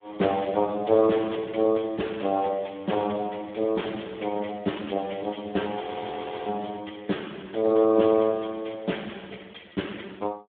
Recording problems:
telephone audio; 190 Hz to 3.6 kHz, Speex
frozen audio; at 6 s for 0.5 s

